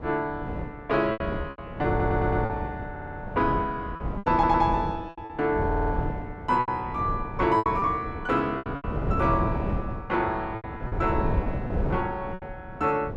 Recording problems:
wind noise; below 320 Hz, SNR 5 dB
lost packets; 9% of the sound replaced, filled with repeated pitch periods
stutter; 4 times, first at 2 s

